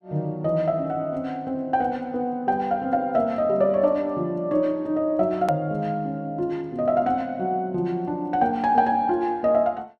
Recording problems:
click at an edit; at 5.5 s

